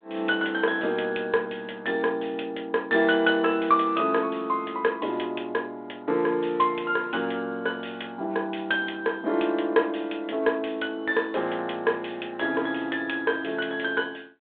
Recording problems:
phone line; 240 Hz to 3.6 kHz, G.726

